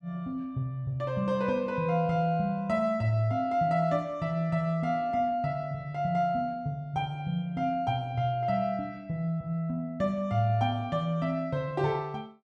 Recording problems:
none

